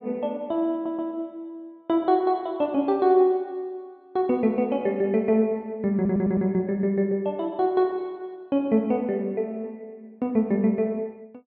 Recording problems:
stutter; at 0.5 s and at 6 s

